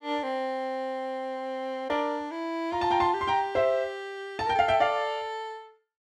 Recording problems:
none

